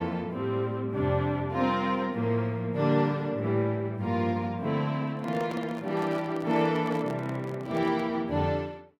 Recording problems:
microphone handling noise; from 5 to 8 s; peak -7 dB vs average level

